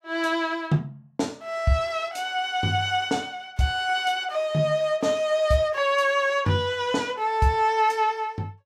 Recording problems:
none

